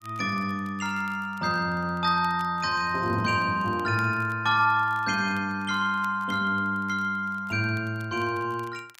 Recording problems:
crackling; vinyl, SNR 29 dB

